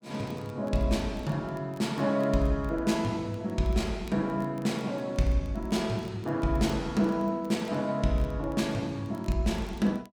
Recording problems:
crackling; vinyl, SNR 30 dB

